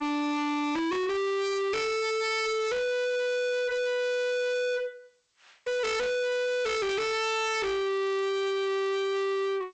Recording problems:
lossy codec; G.722, log-spectral distance 4 dB, nothing above 8 kHz
distortion; hard clipping, signal-to-distortion ratio 6 dB

